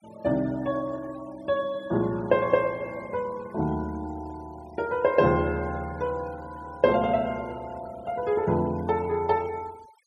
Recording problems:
noise reduction artefacts; signal-to-artefact ratio 23 dB

